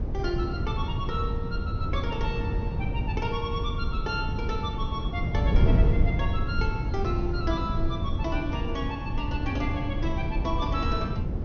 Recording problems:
treble missing; nothing above 6.7 kHz
wind on the microphone; below 130 Hz, SNR -4 dB

